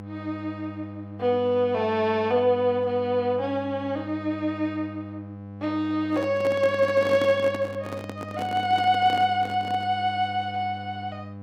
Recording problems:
electrical hum; 50 Hz, harmonics up to 1.3 kHz, SNR 14 dB
handling noise; from 6 to 10 s; peak -4 dB vs average level

